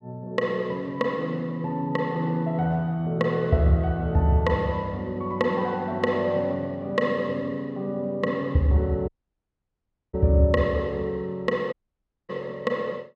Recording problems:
dropout; at 9 s for 1 s and at 12 s for 0.5 s

